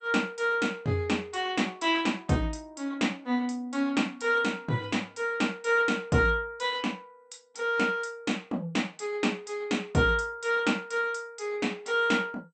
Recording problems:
lossy compression; MP2, log-spectral distance 3 dB, nothing above 8.5 kHz

